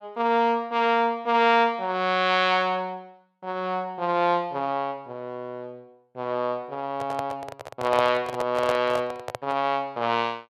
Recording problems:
microphone handling noise; from 7 to 9.5 s; peak 0 dB vs average level

